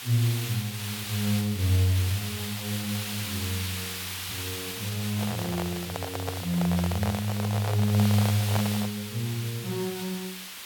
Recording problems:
background hiss; SNR 6 dB
microphone handling noise; from 5 to 9 s; peak +1 dB vs average level

